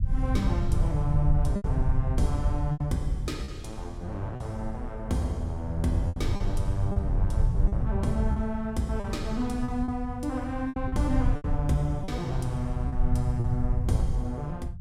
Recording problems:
low-frequency rumble; below 100 Hz, SNR -1 dB
lost packets; 6% of the sound replaced, filled with repeated pitch periods

